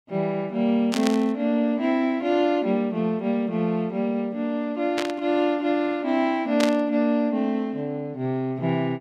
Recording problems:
static burst; at 1 s, at 5 s and at 6.5 s; peak 0 dB vs average level

